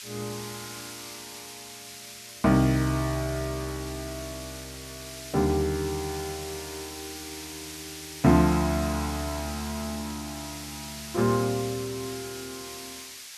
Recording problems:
hiss; slope +5 dB per octave, SNR 11 dB

